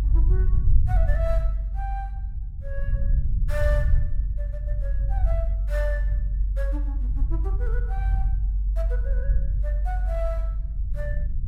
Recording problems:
low-frequency rumble; below 52 Hz, strongest tone 48 Hz, SNR -11 dB

